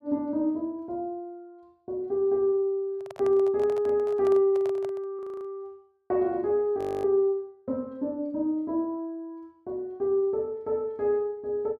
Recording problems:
handling noise; from 3 to 5 s; peak -9 dB vs average level
audio freezing; at 5 s and at 7 s

